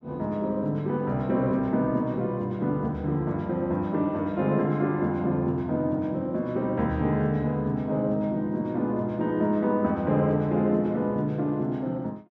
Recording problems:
none

